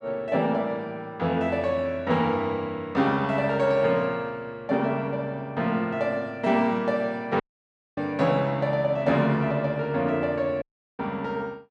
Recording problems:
dropout; at 7.5 s for 0.5 s and at 11 s

